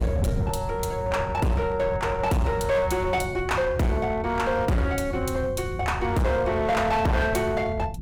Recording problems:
distorted audio; hard clipping, signal-to-distortion ratio 8 dB
wind noise; below 140 Hz, SNR 8 dB

